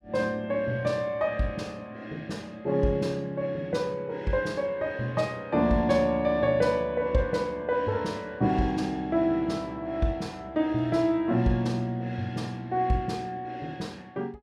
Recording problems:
none

